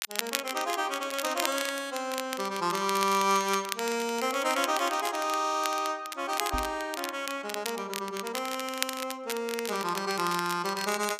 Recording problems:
crackling; vinyl, SNR 7 dB
microphone thump; at 6.5 s; peak -1 dB vs average level

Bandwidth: 14.5 kHz